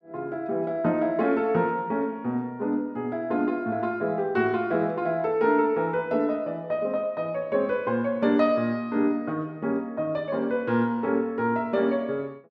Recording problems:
none

